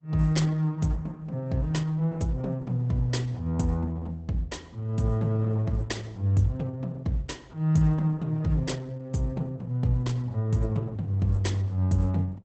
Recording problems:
codec artefacts; Opus, log-spectral distance 2 dB, nothing above 8 kHz

